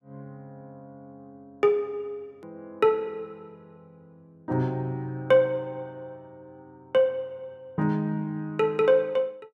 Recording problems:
hard cut with a click; at 2.5 s

